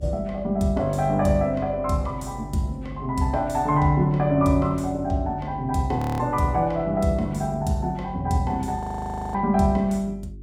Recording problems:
electrical hum; 50 Hz, harmonics up to 400 Hz, SNR 17 dB
audio freezing; at 6 s and at 9 s for 0.5 s

